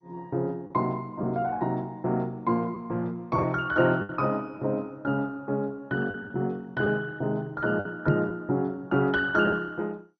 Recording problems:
codec artefacts; MP2, log-spectral distance 2 dB, nothing above 5.2 kHz
lost packets; 3% of the sound replaced, filled with the last packet
microphone bump; at 8 s; peak +8 dB vs average level

